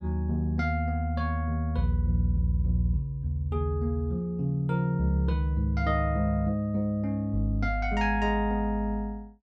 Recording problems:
none

